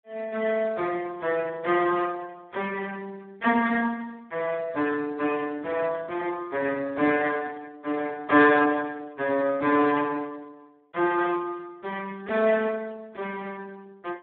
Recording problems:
telephone audio; 240 Hz to 2.5 kHz, Speex

